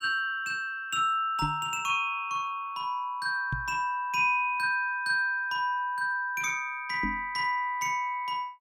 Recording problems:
microphone thump; at 1.5 s, at 3.5 s and at 7 s; peak -1 dB vs average level

